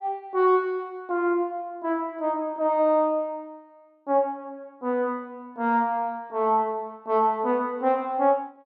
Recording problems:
none

